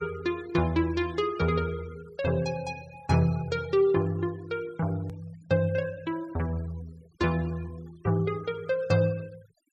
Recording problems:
denoising artefacts; signal-to-artefact ratio 24 dB
edit click; at 5 s

